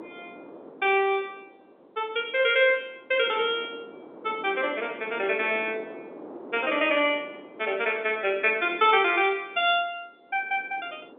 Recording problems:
phone line; 280 Hz to 3.6 kHz, G.711
wind on the microphone; below 630 Hz, SNR 20 dB

